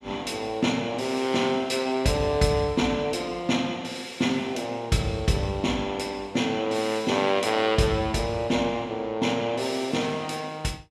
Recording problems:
none

